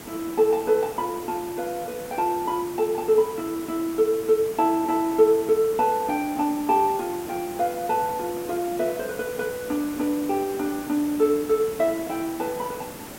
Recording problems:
hiss; slope -5 dB per octave, SNR 14 dB

